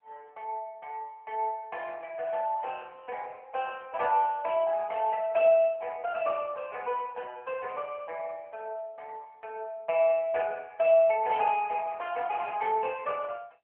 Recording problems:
phone line; 370 Hz to 3.1 kHz, AMR-NB

